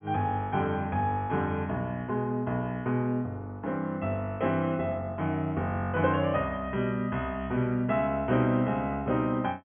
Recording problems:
treble missing; nothing above 3.3 kHz

